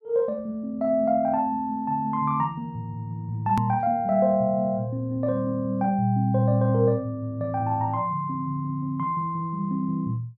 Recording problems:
edit click; at 3.5 s

